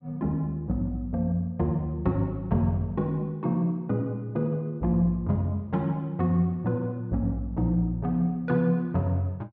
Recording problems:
none

